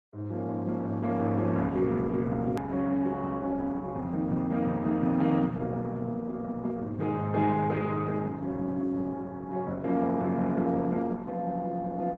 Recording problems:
lossy codec; Opus, log-spectral distance 2 dB, nothing above 13.1 kHz
edit click; at 2.5 s

